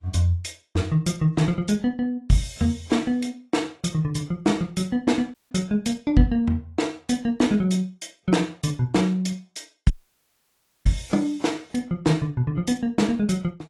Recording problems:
codec artefacts; AAC, log-spectral distance 2 dB, nothing above 11.3 kHz
dropout; at 5.5 s and at 10 s for 1 s

